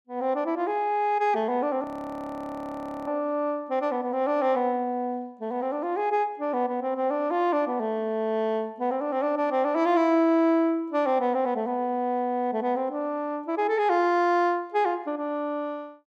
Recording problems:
frozen audio; at 2 s for 1 s

